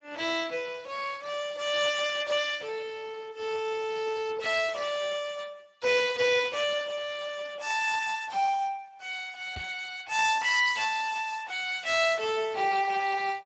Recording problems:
codec artefacts; Speex, log-spectral distance 5 dB, nothing above 7.6 kHz
knock on the microphone; at 9.5 s; peak -7 dB vs average level

